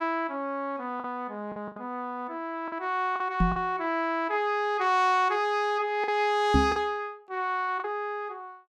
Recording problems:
lost packets; 5% of the sound replaced, filled with the last packet
microphone thump; at 3.5 s and at 6.5 s; peak +8 dB vs average level

